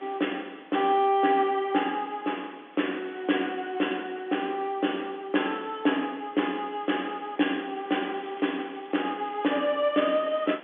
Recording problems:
telephone audio; 220 Hz to 3.5 kHz, G.711
wind noise; below 2.8 kHz, SNR 23 dB
crackling; from 8.5 to 9.5 s; loose cable, SNR 26 dB

